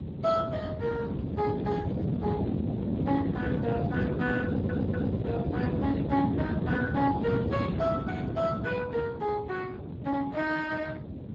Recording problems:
lossy codec; Speex, log-spectral distance 3 dB
rumble; below 210 Hz, SNR 13 dB
wind on the microphone; below 330 Hz, SNR 0 dB
audio stuttering; at 4.5 s

